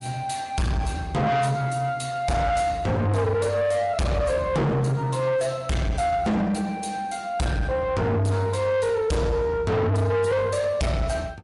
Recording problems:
lossy codec; MP3, log-spectral distance 2 dB, nothing above 11 kHz
distorted audio; soft clipping, signal-to-distortion ratio 7 dB

